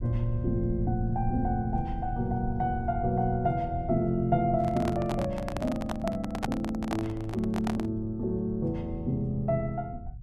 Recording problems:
low-frequency rumble; below 94 Hz, SNR 10 dB
handling noise; from 4.5 to 8 s; peak +3 dB vs average level

